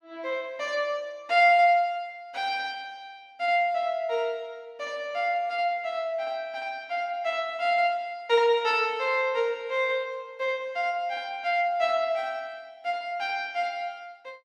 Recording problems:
none

